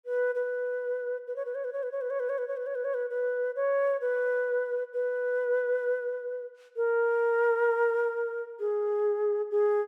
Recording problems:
none

